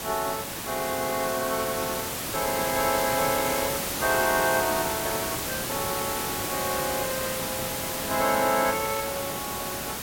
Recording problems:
hiss; slope -3 dB per octave, SNR 1 dB

